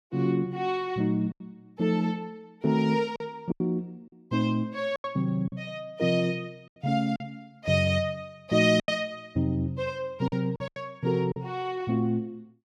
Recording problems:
lost packets; 6% of the sound replaced, filled with silence

